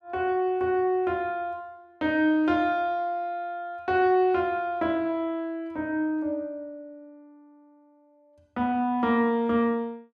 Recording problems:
none

